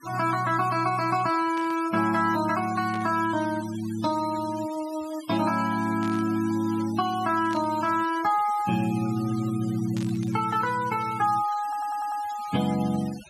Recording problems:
noise reduction artefacts; signal-to-artefact ratio 17 dB
burst of static; 5 times, first at 1.5 s; peak -11 dB vs average level
stutter; at 12 s

